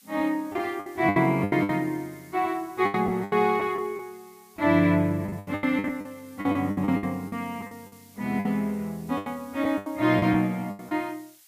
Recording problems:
background hiss; slope +5 dB per octave, SNR 27 dB
lost packets; 14% of the sound replaced, filled with the last packet

